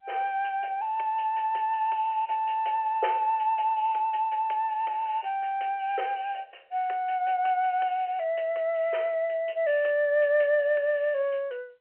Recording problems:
telephone audio; 340 Hz to 3.2 kHz, G.711

